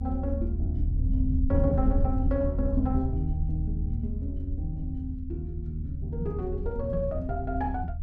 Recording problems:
low-frequency rumble; below 78 Hz, SNR -1 dB

